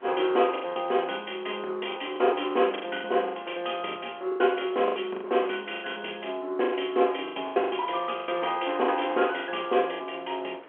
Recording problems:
phone line; 300 Hz to 3.3 kHz, G.711
wind noise; below 1.5 kHz, SNR 24 dB
lost packets; 15% of the sound replaced, filled with the last packet

